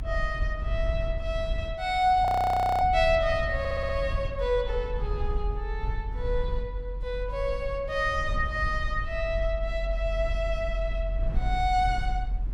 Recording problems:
rumble; below 60 Hz, strongest tone 44 Hz, SNR 5 dB
frozen audio; at 2.5 s for 0.5 s
stutter; at 3.5 s

